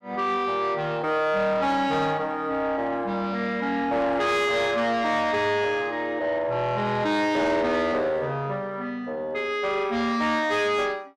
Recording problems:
distortion; soft clipping, signal-to-distortion ratio 12 dB

